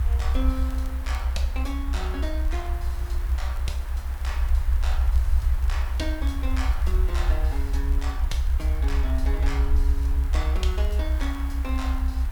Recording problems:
hiss; SNR 9 dB
low-frequency rumble; below 66 Hz, SNR -9 dB
crackle; vinyl, SNR 23 dB

